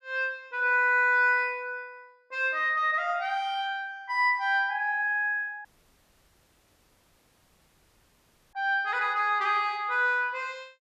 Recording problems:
audio cutting out; at 5.5 s for 3 s

